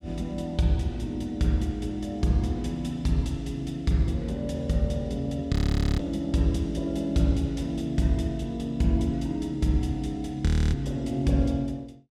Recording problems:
audio freezing; at 5.5 s and at 10 s

